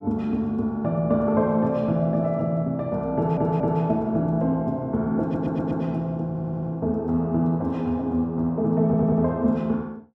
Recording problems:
audio stuttering; 4 times, first at 3 s

